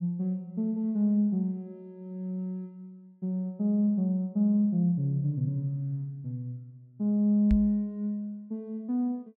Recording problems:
microphone thump; at 7.5 s; peak +4 dB vs average level

